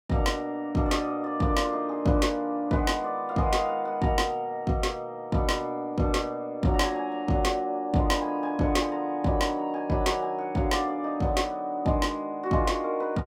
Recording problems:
none

